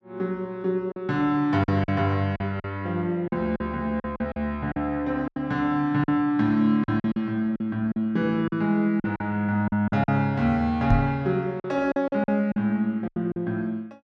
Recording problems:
lost packets; 9% of the sound replaced, filled with silence
microphone bump; at 11 s; peak +7 dB vs average level

